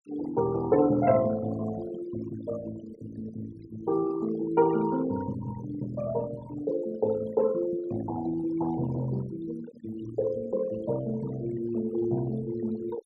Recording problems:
noise reduction artefacts; signal-to-artefact ratio 15 dB

